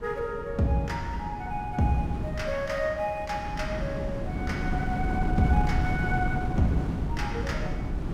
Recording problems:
wind noise; below 220 Hz, SNR 2 dB

